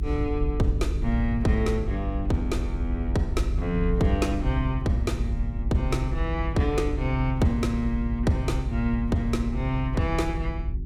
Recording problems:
hum; 50 Hz, harmonics up to 400 Hz, SNR 6 dB
rumble; below 64 Hz, SNR 4 dB

